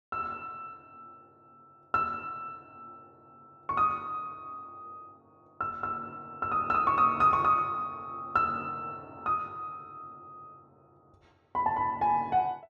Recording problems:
none

